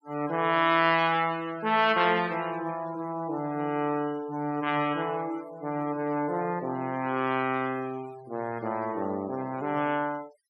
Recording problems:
denoising artefacts; signal-to-artefact ratio 21 dB

